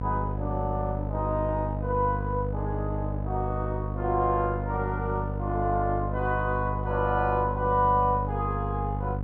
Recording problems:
mains hum; 50 Hz, harmonics up to 800 Hz, SNR 3 dB

